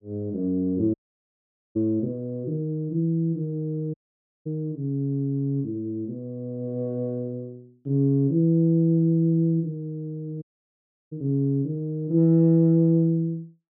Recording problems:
dropout; at 1 s for 1 s, at 4 s for 0.5 s and at 10 s for 0.5 s

